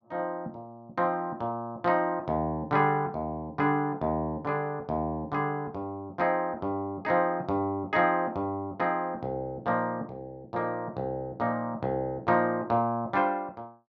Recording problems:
none

